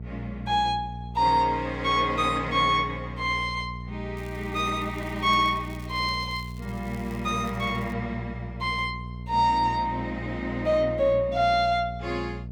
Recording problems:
electrical hum; 60 Hz, harmonics up to 480 Hz, SNR 11 dB
crackle; from 4 to 8 s; loose cable, SNR 26 dB

